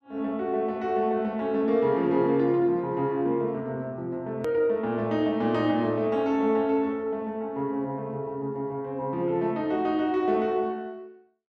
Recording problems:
click at an edit; at 4.5 s

